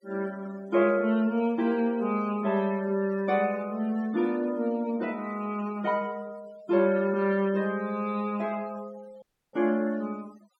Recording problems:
noise reduction artefacts; signal-to-artefact ratio 25 dB
audio cutting out; at 9 s

